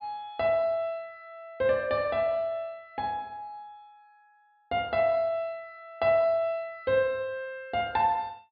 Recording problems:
low-pass filter; nothing above 4.7 kHz

